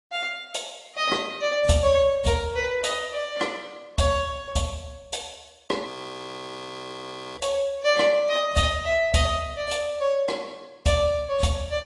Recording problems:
codec artefacts; AAC, log-spectral distance 4 dB, nothing above 10.4 kHz
audio freezing; at 6 s for 1.5 s

